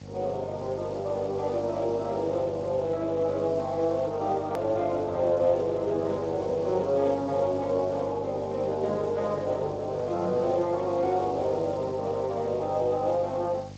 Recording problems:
codec artefacts; Speex, log-spectral distance 6 dB, nothing above 13.1 kHz
hum; 50 Hz, harmonics up to 850 Hz, SNR 15 dB
background hiss; slope +1 dB per octave, SNR 27 dB
hard cut with a click; at 4.5 s

